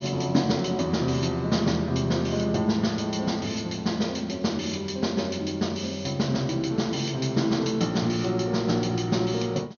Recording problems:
low-pass filter; nothing above 6.6 kHz

